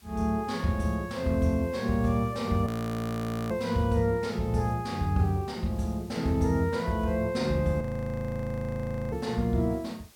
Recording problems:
background hiss; slope 0 dB per octave, SNR 27 dB
audio freezing; at 2.5 s for 1 s and at 8 s for 1.5 s

